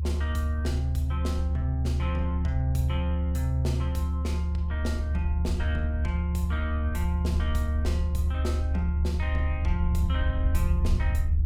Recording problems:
low-frequency rumble; below 76 Hz, strongest tone 74 Hz, SNR -6 dB

